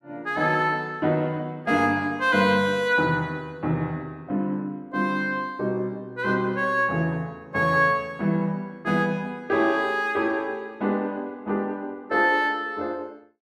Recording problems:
none

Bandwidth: 14.5 kHz